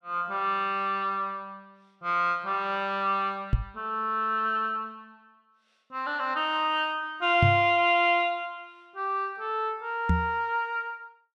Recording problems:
microphone bump; at 3.5 s, at 7.5 s and at 10 s; peak +6 dB vs average level

